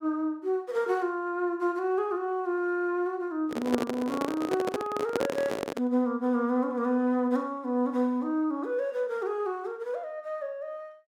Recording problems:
microphone handling noise; from 3.5 to 6 s; peak +4 dB vs average level

